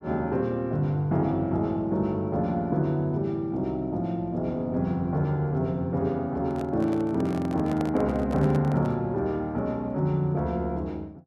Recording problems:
microphone handling noise; from 6.5 to 9 s; peak -5 dB vs average level

